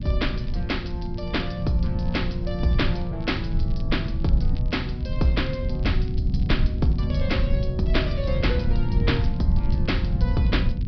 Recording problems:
low-pass filter; nothing above 5.5 kHz
rumble; below 110 Hz, SNR -1 dB
crackle; vinyl, SNR 26 dB

